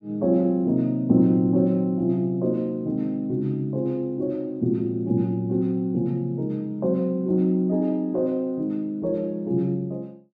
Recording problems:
none

